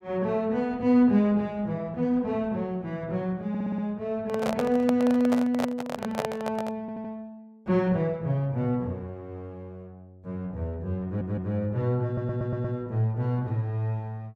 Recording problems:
stutter; 4 times, first at 3.5 s
handling noise; from 4.5 to 7 s; peak +1 dB vs average level

